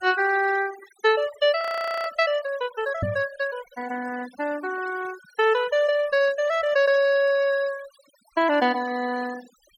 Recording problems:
noise reduction artefacts; signal-to-artefact ratio 19 dB
audio freezing; at 1.5 s
microphone thump; at 3 s; peak 0 dB vs average level

